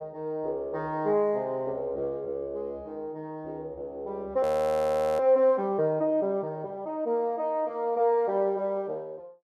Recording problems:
frozen audio; at 4.5 s for 1 s

